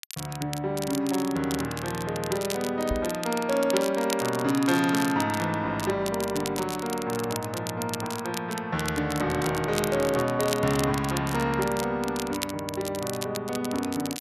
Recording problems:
crackling; vinyl, SNR 10 dB
knock on the microphone; at 3 s; peak 0 dB vs average level

